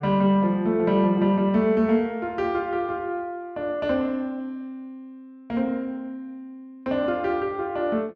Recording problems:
none

